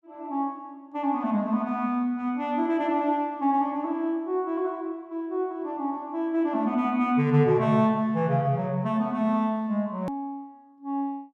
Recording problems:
click at an edit; at 10 s

